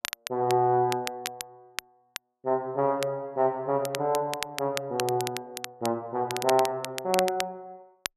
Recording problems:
crackle; vinyl, SNR 9 dB

